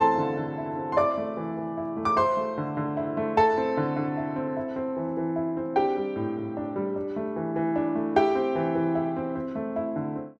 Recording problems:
none

